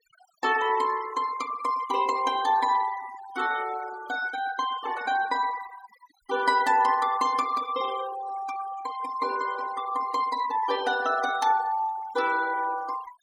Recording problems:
denoising artefacts; signal-to-artefact ratio 15 dB

